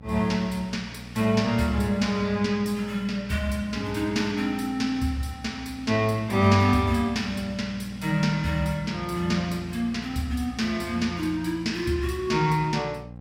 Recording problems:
hum; 60 Hz, harmonics up to 1.1 kHz, SNR 17 dB

